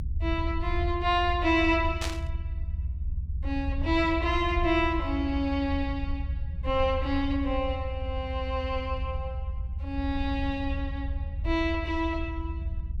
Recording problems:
rumble; below 78 Hz, SNR 4 dB
burst of static; at 2 s; peak -1 dB vs average level

